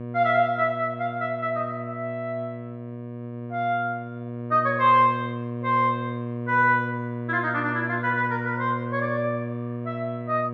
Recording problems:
electrical hum; 60 Hz, harmonics up to 1.2 kHz, SNR 8 dB

